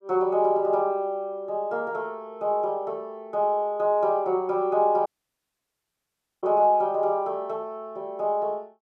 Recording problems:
audio cutting out; at 5 s for 1.5 s

